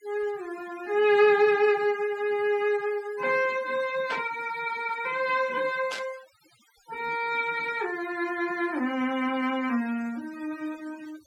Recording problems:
noise reduction artefacts; signal-to-artefact ratio 20 dB
static burst; at 4 s and at 6 s; peak -5 dB vs average level

